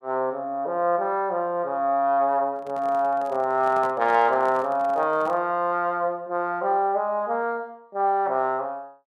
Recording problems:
handling noise; from 2.5 to 5.5 s; peak -10 dB vs average level

